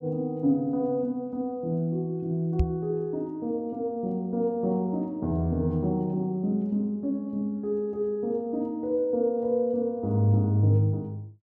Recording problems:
microphone bump; at 2.5 s; peak +6 dB vs average level

